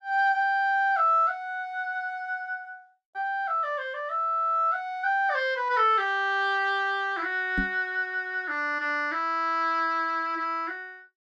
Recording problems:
microphone thump; at 7.5 s; peak 0 dB vs average level

